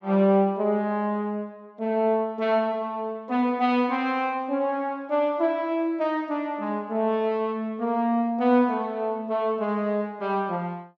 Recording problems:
none

